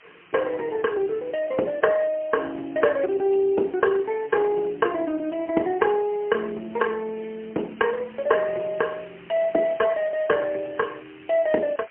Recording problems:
telephone audio; 260 Hz to 2.9 kHz, AMR-NB, then MP3
hiss; SNR 25 dB

